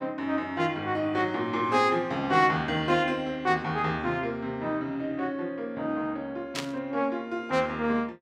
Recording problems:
burst of static; at 6.5 s; peak 0 dB vs average level

